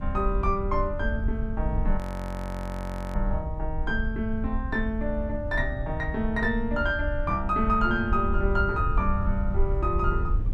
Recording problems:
low-frequency rumble; below 76 Hz, SNR 3 dB
audio freezing; at 2 s for 1 s

